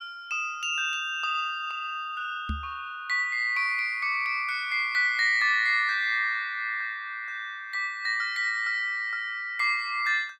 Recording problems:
knock on the microphone; at 2.5 s; peak -2 dB vs average level

